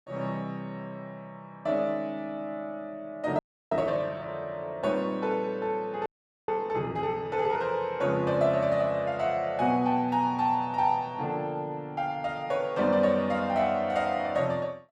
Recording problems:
audio freezing; at 3.5 s and at 6 s

